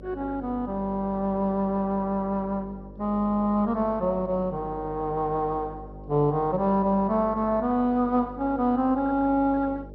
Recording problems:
lossy compression; MP2, log-spectral distance 2 dB, nothing above 5 kHz
mains hum; 50 Hz, harmonics up to 600 Hz, SNR 18 dB

